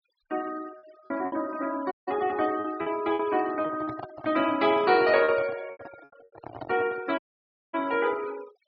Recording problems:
treble missing; nothing above 5.5 kHz
noise reduction artefacts; signal-to-artefact ratio 20 dB
packet loss; 8% of the sound replaced, filled with repeated pitch periods
audio cutting out; at 2 s and at 7 s for 0.5 s
microphone handling noise; from 3.5 to 7 s; peak -7 dB vs average level

